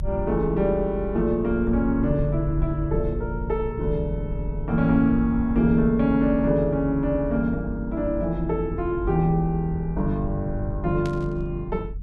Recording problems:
low-frequency rumble; below 76 Hz, strongest tone 46 Hz, SNR 9 dB
burst of static; at 11 s; peak -12 dB vs average level

